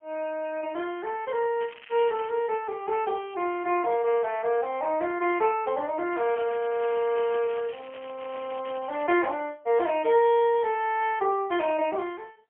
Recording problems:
phone line; 300 Hz to 3.2 kHz, AMR-NB, then MP3
crackle; at 1.5 s and from 6 to 9 s; loose cable, SNR 20 dB

